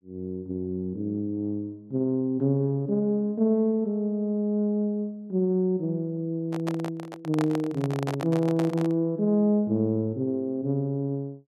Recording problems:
handling noise; from 6.5 to 9 s; peak -2 dB vs average level

